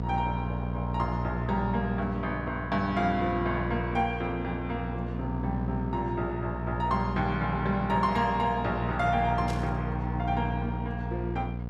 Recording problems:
hum; 60 Hz, harmonics up to 960 Hz, SNR 3 dB
burst of static; at 9.5 s; peak -7 dB vs average level

